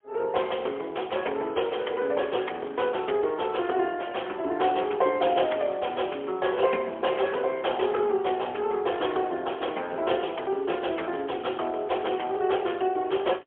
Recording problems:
phone line; 300 Hz to 3.3 kHz, AMR-NB, then MP3

